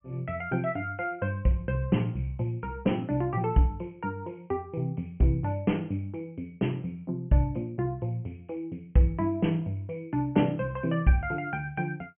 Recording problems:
treble cut off; nothing above 3.1 kHz

